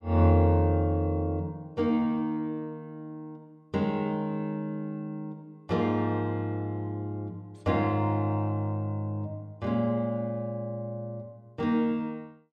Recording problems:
none

